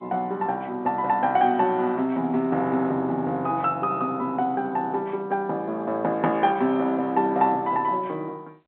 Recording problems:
phone line; 220 Hz to 3.6 kHz, G.711

